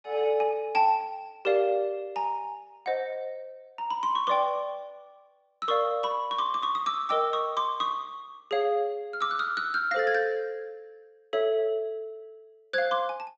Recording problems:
low-pass filter; nothing above 8 kHz

